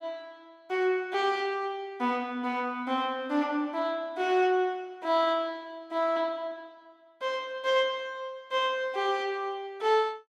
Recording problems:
none

